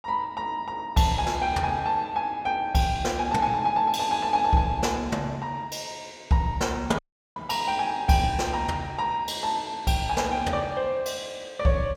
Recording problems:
audio cutting out; at 7 s

